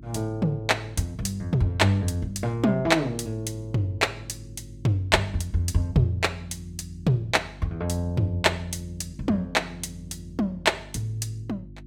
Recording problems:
mains hum; 50 Hz, harmonics up to 350 Hz, SNR 19 dB

